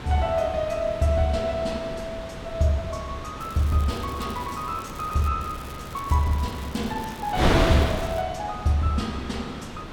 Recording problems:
wind noise; below 1.1 kHz, SNR 5 dB
crackle; from 3.5 to 5.5 s and from 5.5 to 8 s; loose cable, SNR 20 dB

